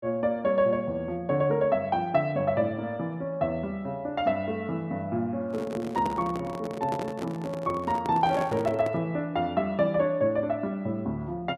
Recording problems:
microphone handling noise; from 5.5 to 9 s; peak -1 dB vs average level

